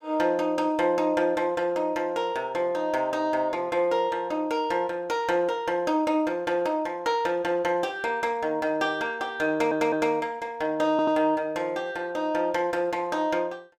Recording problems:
stutter; at 9.5 s and at 11 s

